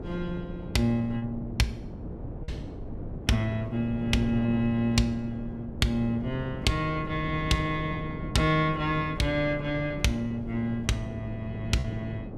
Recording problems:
wind noise; below 300 Hz, SNR 10 dB
packet loss; 1.8% of the sound replaced, filled with repeated pitch periods

